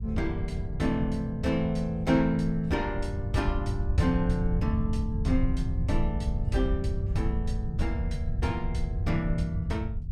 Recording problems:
rumble; below 96 Hz, SNR 2 dB

